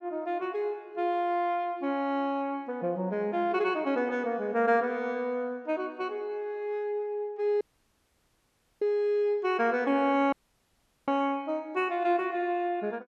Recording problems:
audio cutting out; at 7.5 s for 1 s and at 10 s for 1 s

